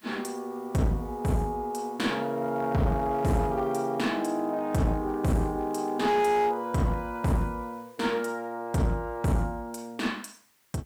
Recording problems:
distorted audio; hard clipping, uneven, signal-to-distortion ratio 10 dB
background hiss; SNR 30 dB

